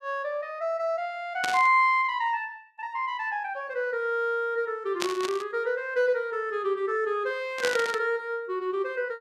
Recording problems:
burst of static; at 1.5 s, at 5 s and at 7.5 s; peak +2 dB vs average level

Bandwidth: 15 kHz